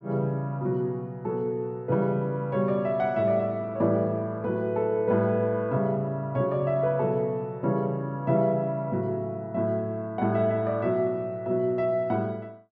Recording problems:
none

